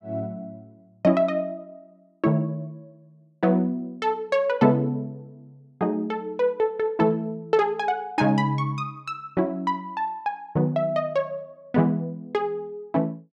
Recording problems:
none

